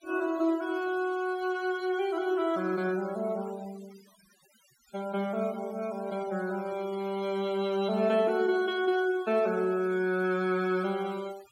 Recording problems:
denoising artefacts; signal-to-artefact ratio 22 dB

